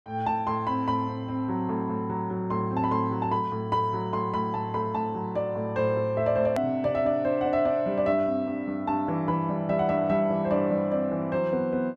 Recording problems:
hard cut with a click; at 6.5 s

